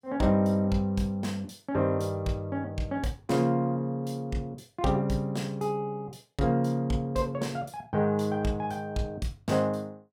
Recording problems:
none

